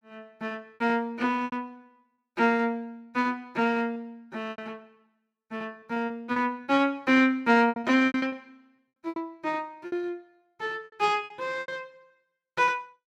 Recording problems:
packet loss; 11% of the sound replaced, filled with repeated pitch periods

